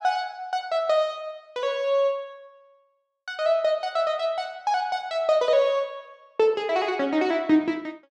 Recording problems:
none

